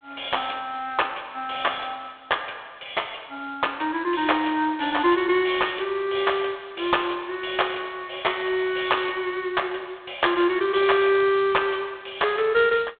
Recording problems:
telephone audio; 280 Hz to 3.5 kHz, G.726

